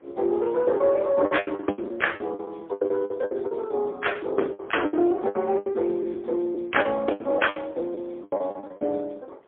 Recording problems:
phone line; 240 Hz to 3.3 kHz, AMR-NB, then MP3
wind on the microphone; below 880 Hz, SNR 20 dB
packet loss; 17% of the sound replaced, filled with the last packet

